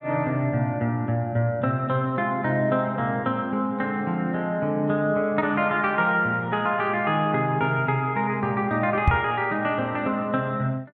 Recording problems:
knock on the microphone; at 9 s; peak +8 dB vs average level

